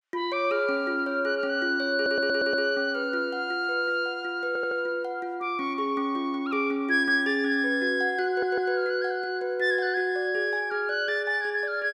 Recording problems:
audio stuttering; at 2 s, at 4.5 s and at 8.5 s

